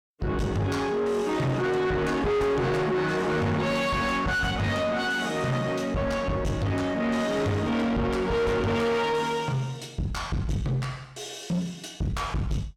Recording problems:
distorted audio; soft clipping, signal-to-distortion ratio 6 dB

